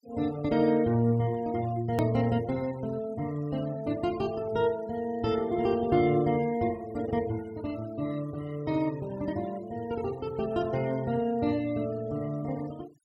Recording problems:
noise reduction artefacts; signal-to-artefact ratio 21 dB
click at an edit; at 2 s

